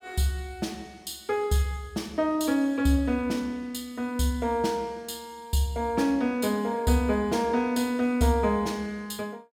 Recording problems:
none

